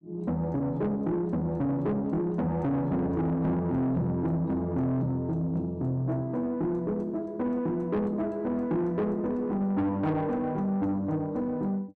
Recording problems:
distorted audio; soft clipping, signal-to-distortion ratio 11 dB

